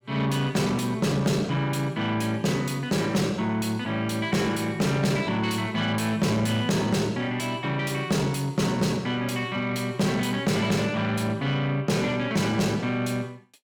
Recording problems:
distortion; soft clipping, signal-to-distortion ratio 6 dB

